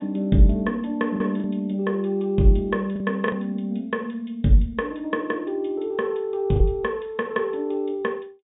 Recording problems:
treble cut off; nothing above 4 kHz
packet loss; 2% of the sound replaced, filled with the last packet

